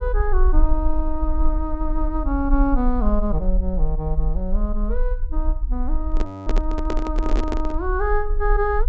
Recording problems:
treble cut off; nothing above 8 kHz
low-frequency rumble; below 42 Hz, strongest tone 24 Hz, SNR -1 dB
microphone handling noise; from 6 to 8 s; peak +3 dB vs average level
audio freezing; at 6.5 s

